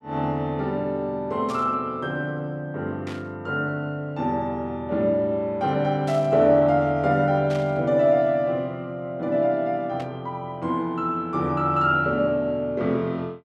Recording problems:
burst of static; 5 times, first at 1.5 s; peak -12 dB vs average level

